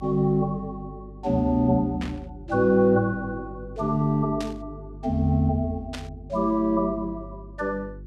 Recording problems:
hum; 50 Hz, harmonics up to 400 Hz, SNR 18 dB
burst of static; at 2 s, at 4.5 s and at 6 s; peak -7 dB vs average level

